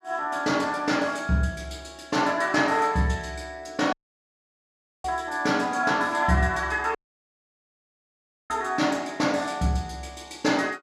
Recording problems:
audio cutting out; at 4 s for 1 s and at 7 s for 1.5 s

